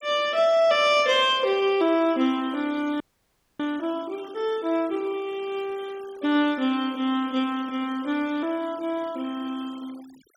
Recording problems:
noise reduction artefacts; signal-to-artefact ratio 23 dB
audio freezing; at 3 s for 0.5 s

